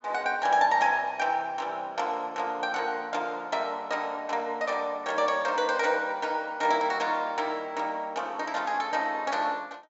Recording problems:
treble cut off; nothing above 8 kHz

